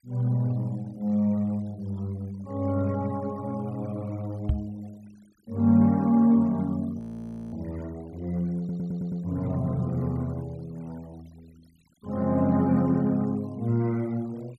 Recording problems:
noise reduction artefacts; signal-to-artefact ratio 28 dB
microphone bump; at 4.5 s; peak +4 dB vs average level
audio freezing; at 7 s for 0.5 s
stutter; at 8.5 s

